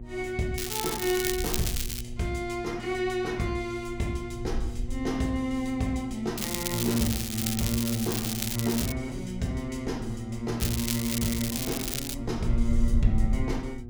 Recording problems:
mains hum; 60 Hz, harmonics up to 720 Hz, SNR 10 dB
wind noise; below 62 Hz, SNR 7 dB
crackle; from 0.5 to 2 s, from 6.5 to 9 s and from 11 to 12 s; loose cable, SNR 1 dB

